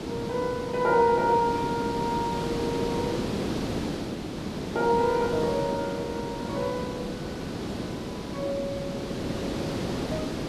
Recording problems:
background hiss; SNR 4 dB

